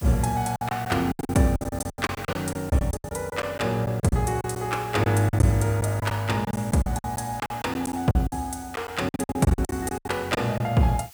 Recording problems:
hiss; slope +3 dB per octave, SNR 20 dB
packet loss; 16% of the sound replaced, filled with silence

